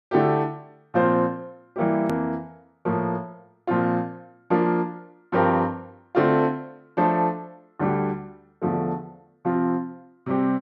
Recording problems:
edit click; at 2 s

